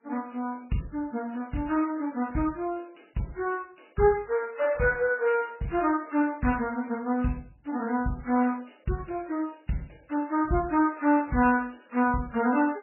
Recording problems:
lossy compression; MP3, log-spectral distance 6 dB, nothing above 2.5 kHz

